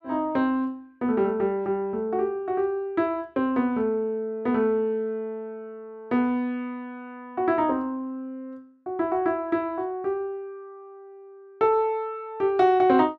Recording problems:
none

